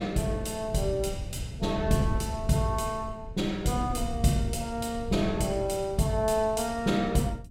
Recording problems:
wind noise; below 120 Hz, SNR 11 dB

